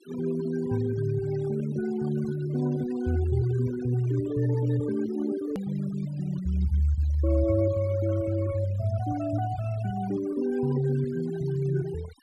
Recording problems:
denoising artefacts; signal-to-artefact ratio 19 dB
edit click; at 5.5 s

